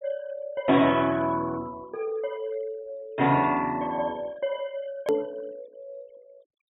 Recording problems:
low-pass filter; nothing above 4 kHz
noise reduction artefacts; signal-to-artefact ratio 23 dB
edit click; at 5 s

